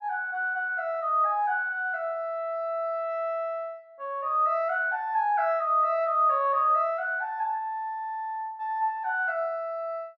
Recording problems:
none

